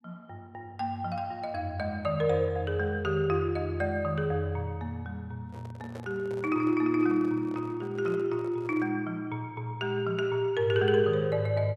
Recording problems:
handling noise; from 5.5 to 9 s; peak -10 dB vs average level

